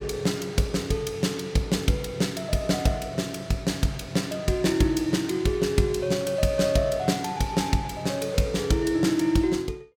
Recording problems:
none

